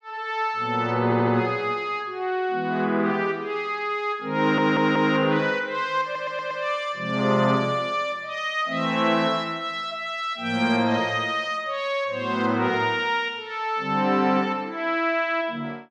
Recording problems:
stutter; at 1 s, at 4.5 s and at 6 s

